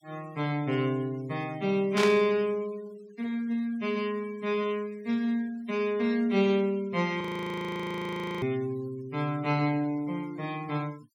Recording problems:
noise reduction artefacts; signal-to-artefact ratio 24 dB
static burst; at 2 s; peak +2 dB vs average level
audio freezing; at 7 s for 1 s

